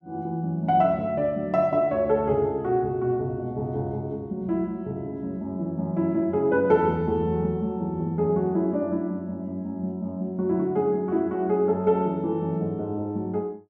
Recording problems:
none

